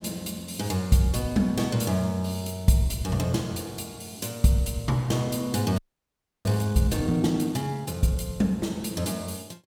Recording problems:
audio freezing; at 6 s for 0.5 s

